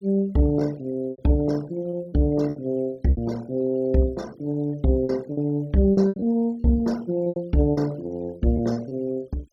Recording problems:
noise reduction artefacts; signal-to-artefact ratio 25 dB
lost packets; 9% of the sound replaced, filled with repeated pitch periods

